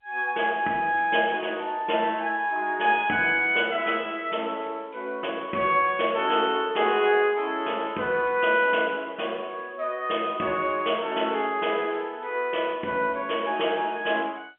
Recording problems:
telephone audio; 240 Hz to 3.3 kHz, G.711

